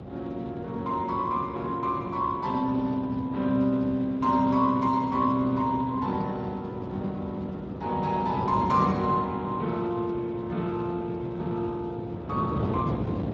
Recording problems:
lossy codec; Speex, log-spectral distance 3 dB, nothing above 7.3 kHz
wind on the microphone; below 430 Hz, SNR 8 dB

